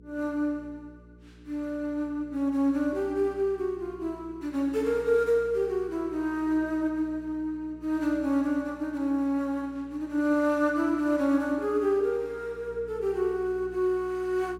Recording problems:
hum; 60 Hz, harmonics up to 480 Hz, SNR 22 dB

